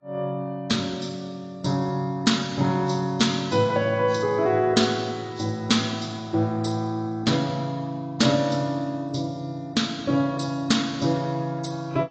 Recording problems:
lossy codec; AAC, log-spectral distance 4 dB, nothing above 7.6 kHz

